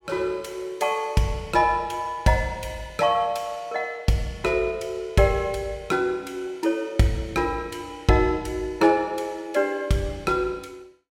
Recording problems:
none

